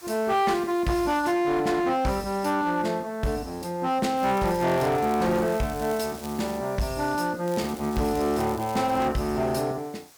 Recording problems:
distorted audio; hard clipping, signal-to-distortion ratio 12 dB
hiss; slope 0 dB per octave, SNR 23 dB
crackle; from 4 to 6.5 s and from 7.5 to 9 s; loose cable, SNR 19 dB

